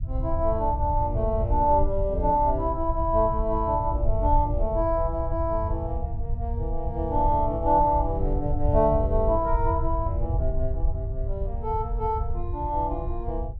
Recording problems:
low-frequency rumble; below 82 Hz, SNR 4 dB

